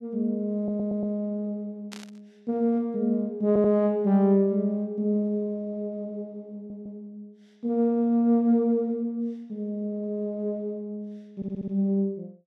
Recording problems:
audio stuttering; 4 times, first at 0.5 s
burst of static; at 2 s; peak -10 dB vs average level

